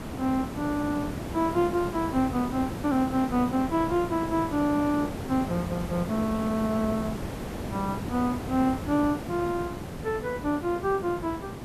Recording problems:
hiss; slope -7 dB per octave, SNR 7 dB

